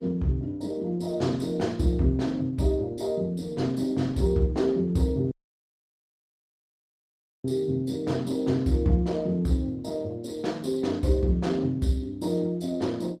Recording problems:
lossy compression; Opus, log-spectral distance 2 dB, nothing above 15.5 kHz
dropout; at 5.5 s for 2 s

